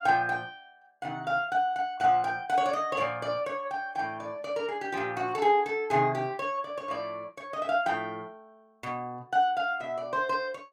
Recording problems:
none

